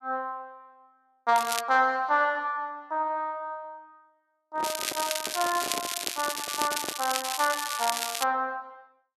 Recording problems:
crackle; at 1.5 s and from 4.5 to 8 s; loose cable, SNR 3 dB
handling noise; from 4.5 to 7 s; peak -4 dB vs average level

